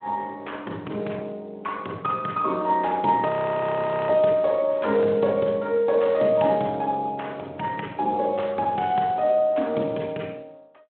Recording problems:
phone line; 170 Hz to 3.8 kHz, Speex
frozen audio; at 3.5 s for 1 s

